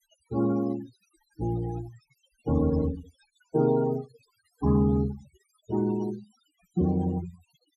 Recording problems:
denoising artefacts; signal-to-artefact ratio 17 dB

